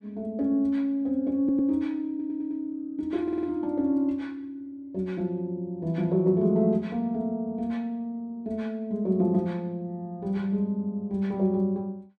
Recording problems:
stutter; at 1.5 s, at 2 s and at 3 s

